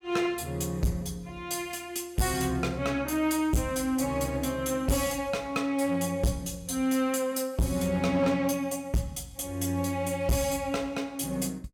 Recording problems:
distortion; hard clipping, uneven, signal-to-distortion ratio 6 dB

